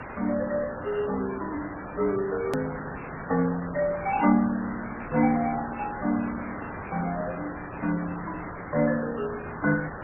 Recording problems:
lossy codec; MP3, then MP2, log-spectral distance 15 dB, nothing above 13.3 kHz
hiss; SNR 9 dB
hard cut with a click; at 2.5 s

